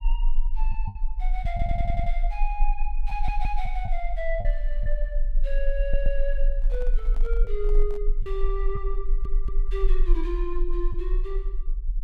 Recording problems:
rumble; below 34 Hz, strongest tone 22 Hz, SNR -5 dB
packet loss; 3% of the sound replaced, filled with the last packet
audio stuttering; 4 times, first at 1.5 s
microphone handling noise; from 6.5 to 8 s; peak -10 dB vs average level

